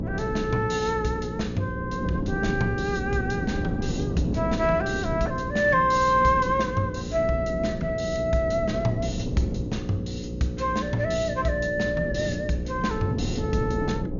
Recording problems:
low-pass filter; nothing above 7 kHz
hum; 60 Hz, harmonics up to 540 Hz, SNR 8 dB
wind on the microphone; below 280 Hz, SNR 7 dB

